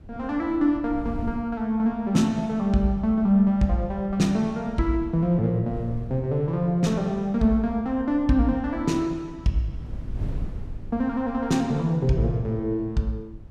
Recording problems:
wind on the microphone; below 110 Hz, SNR 17 dB

